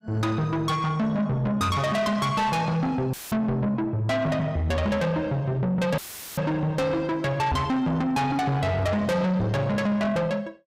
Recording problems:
distortion; soft clipping, signal-to-distortion ratio 8 dB
dropout; at 3 s and at 6 s; filled with static
microphone bump; at 7.5 s; peak +1 dB vs average level

